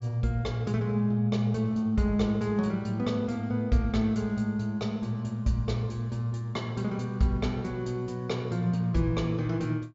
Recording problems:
treble cut off; nothing above 7.3 kHz

